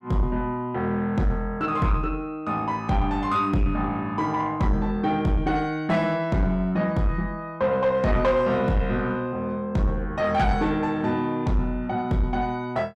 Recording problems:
distorted audio; soft clipping, signal-to-distortion ratio 11 dB

